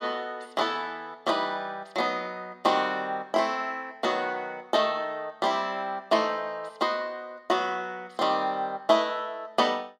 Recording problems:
none

